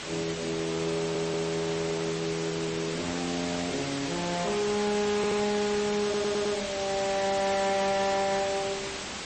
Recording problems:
lossy codec; MP3, then MP3, log-spectral distance 12 dB, nothing above 8.2 kHz
distorted audio; hard clipping, signal-to-distortion ratio 10 dB
hiss; slope -2 dB per octave, SNR 5 dB
stutter; at 1 s, at 5 s and at 6 s

